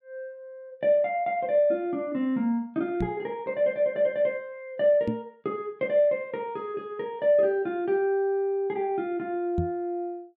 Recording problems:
knock on the microphone; at 3 s, at 5 s and at 9.5 s; peak +2 dB vs average level

